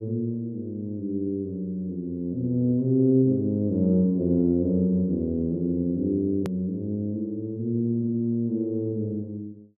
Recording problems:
click at an edit; at 6.5 s

